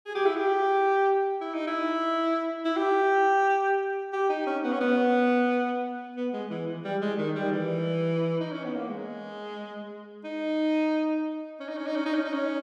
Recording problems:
none

